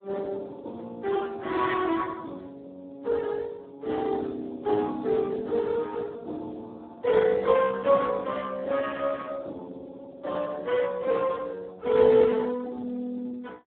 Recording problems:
phone line; 220 Hz to 2 kHz, Speex

